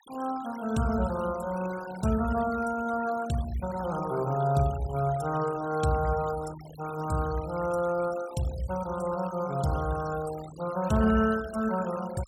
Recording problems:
noise reduction artefacts; signal-to-artefact ratio 16 dB

